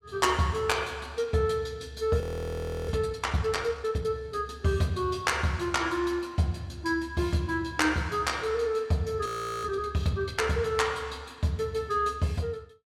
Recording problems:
frozen audio; at 2 s for 0.5 s and at 9.5 s

